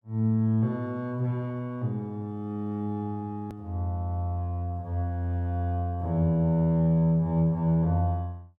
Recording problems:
edit click; at 3.5 s

